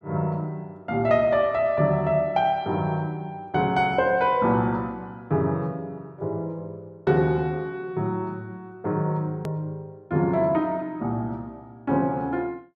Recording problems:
click at an edit; at 9.5 s

